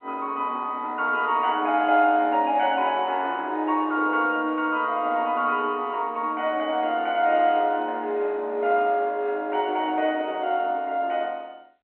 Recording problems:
telephone audio; 260 Hz to 3.4 kHz, G.711

